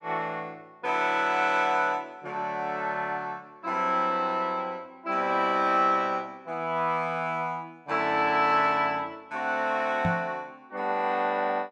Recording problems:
knock on the microphone; at 10 s; peak +2 dB vs average level

